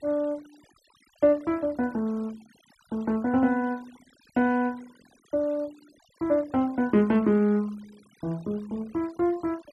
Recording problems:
denoising artefacts; signal-to-artefact ratio 27 dB

